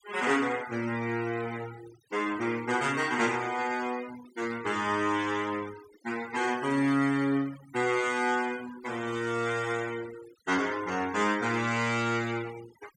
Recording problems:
denoising artefacts; signal-to-artefact ratio 16 dB

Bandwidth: 17.5 kHz